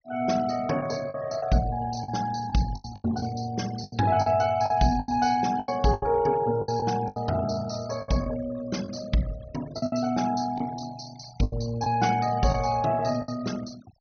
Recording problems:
treble cut off; nothing above 6.2 kHz
denoising artefacts; signal-to-artefact ratio 18 dB
packet loss; 9% of the sound replaced, filled with the last packet

